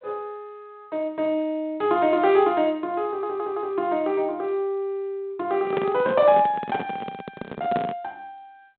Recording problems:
telephone audio; 110 Hz to 3.6 kHz, G.726
audio stuttering; at 3 s
handling noise; from 5.5 to 8 s; peak -1 dB vs average level

